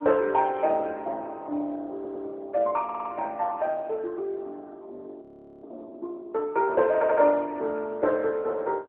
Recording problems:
telephone audio; 260 Hz to 3.1 kHz, AMR-NB
stutter; at 2 s, at 3 s and at 7 s
audio freezing; at 5 s

